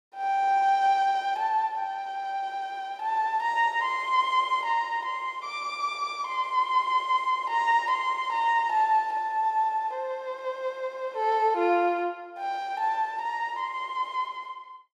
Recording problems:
none

